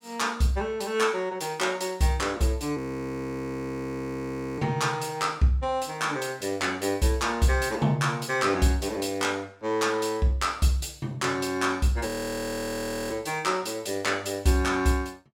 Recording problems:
frozen audio; at 3 s for 2 s and at 12 s for 1 s

